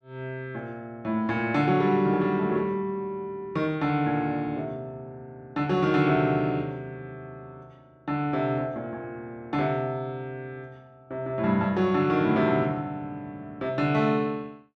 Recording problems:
none

